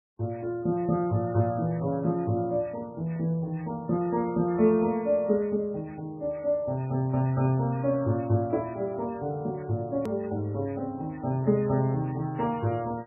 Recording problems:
codec artefacts; MP3, log-spectral distance 2 dB, nothing above 13.1 kHz
click at an edit; at 10 s

